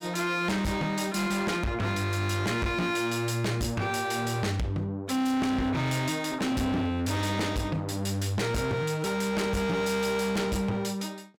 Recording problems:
distortion; hard clipping, signal-to-distortion ratio 7 dB

